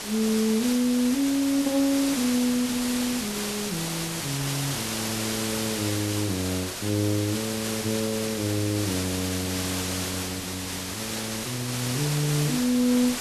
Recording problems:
hiss; slope -1 dB per octave, SNR 3 dB
wind on the microphone; below 430 Hz, SNR 23 dB
crackle; vinyl, SNR 29 dB

